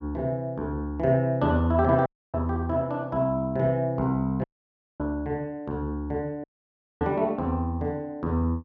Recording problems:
audio cutting out; at 2 s, at 4.5 s for 0.5 s and at 6.5 s for 0.5 s

